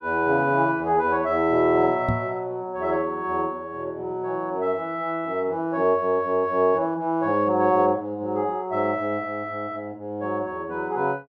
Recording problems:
microphone bump; at 2 s; peak +2 dB vs average level

